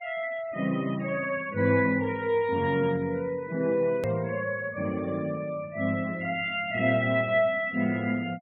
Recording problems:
low-pass filter; nothing above 4 kHz
denoising artefacts; signal-to-artefact ratio 24 dB
hard cut with a click; at 4 s

